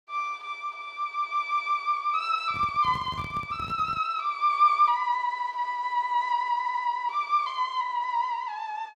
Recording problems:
handling noise; from 2.5 to 4 s; peak -8 dB vs average level
stutter; at 6.5 s

